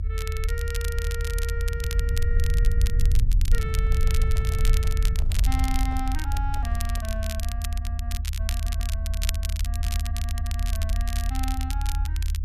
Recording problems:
low-frequency rumble; below 76 Hz, SNR -10 dB
crackle; vinyl, SNR 1 dB
microphone handling noise; from 3.5 to 7.5 s; peak -5 dB vs average level
audio stuttering; at 4 s, at 8.5 s and at 10 s

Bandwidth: 14 kHz